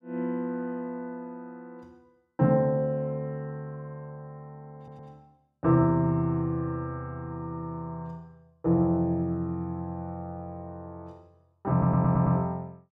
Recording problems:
audio stuttering; at 5 s and at 12 s

